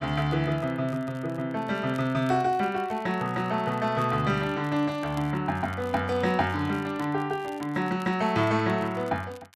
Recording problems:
crackling; vinyl, SNR 26 dB

